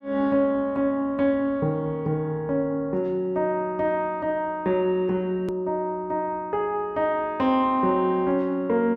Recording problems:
click at an edit; at 5.5 s

